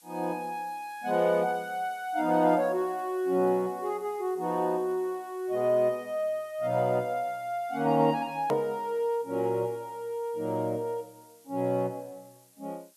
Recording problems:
hiss; slope +2 dB per octave, SNR 27 dB
hard cut with a click; at 8.5 s

